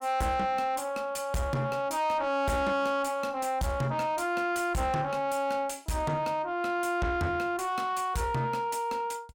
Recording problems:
distortion; soft clipping, signal-to-distortion ratio 7 dB

